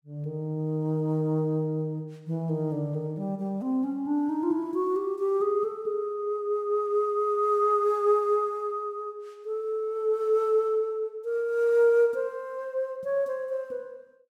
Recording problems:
none

